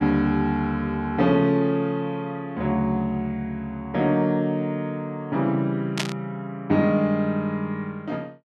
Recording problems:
burst of static; at 6 s; peak +3 dB vs average level

